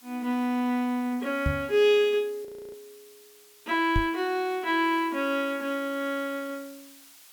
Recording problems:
background hiss; slope +2 dB per octave, SNR 24 dB
knock on the microphone; at 1.5 s and at 4 s; peak +2 dB vs average level
audio freezing; at 2.5 s

